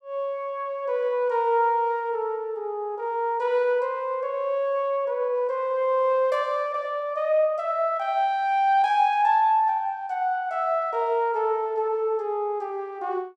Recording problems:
none

